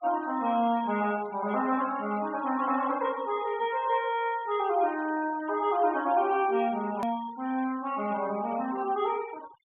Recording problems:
treble missing; nothing above 4 kHz
denoising artefacts; signal-to-artefact ratio 20 dB
edit click; at 7 s

